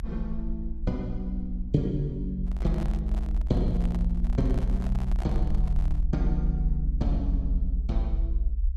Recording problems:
rumble; below 60 Hz, strongest tone 42 Hz, SNR -2 dB
handling noise; from 2.5 to 6 s; peak -5 dB vs average level

